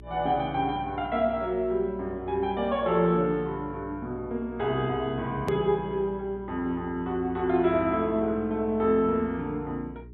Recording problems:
low-pass filter; nothing above 4 kHz
hum; 60 Hz, harmonics up to 420 Hz, SNR 19 dB
edit click; at 5.5 s

